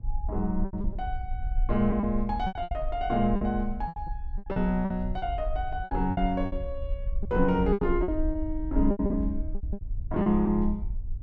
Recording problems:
low-frequency rumble; below 58 Hz, SNR 6 dB
packet loss; 12% of the sound replaced, filled with repeated pitch periods

